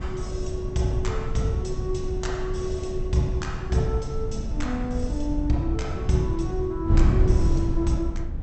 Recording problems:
treble missing; nothing above 8 kHz
wind on the microphone; below 98 Hz, SNR 0 dB

